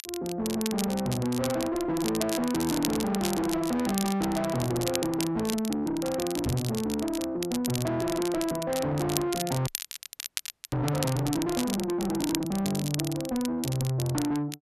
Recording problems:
distorted audio; soft clipping, signal-to-distortion ratio 6 dB
crackle; vinyl, SNR 7 dB
microphone bump; at 6.5 s; peak +3 dB vs average level
audio freezing; at 9.5 s for 1 s

